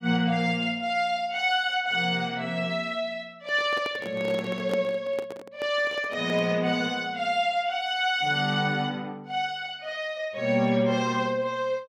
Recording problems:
microphone handling noise; from 3.5 to 6.5 s; peak -2 dB vs average level

